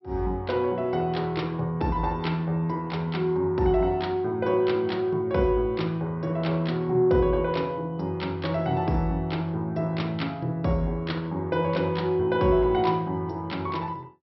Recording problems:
low-pass filter; nothing above 5.6 kHz

